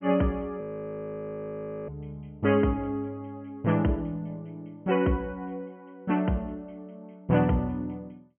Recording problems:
treble cut off; nothing above 3.2 kHz
audio freezing; at 0.5 s for 1.5 s

